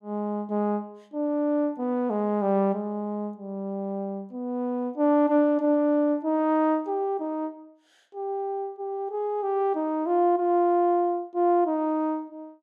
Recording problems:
none

